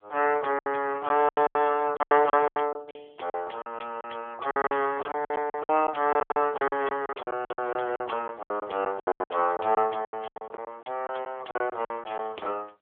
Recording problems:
phone line; 340 Hz to 3.7 kHz, AMR-NB
lost packets; 18% of the sound replaced, filled with silence

